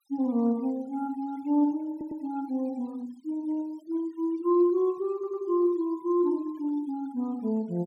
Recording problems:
denoising artefacts; signal-to-artefact ratio 28 dB
audio stuttering; at 2 s and at 5 s

